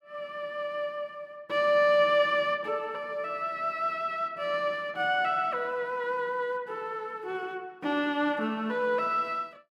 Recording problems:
none

